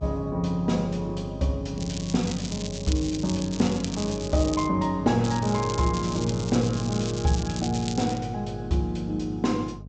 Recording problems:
treble cut off; nothing above 8 kHz
hum; 50 Hz, harmonics up to 500 Hz, SNR 11 dB
crackle; from 2 to 4.5 s and from 5 to 8 s; loose cable, SNR 11 dB

